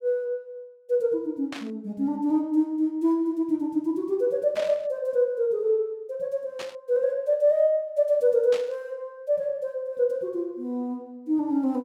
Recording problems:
static burst; 4 times, first at 1.5 s; peak -7 dB vs average level

